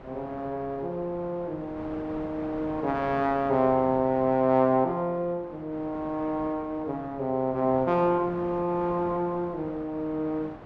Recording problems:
wind noise; below 970 Hz, SNR 15 dB

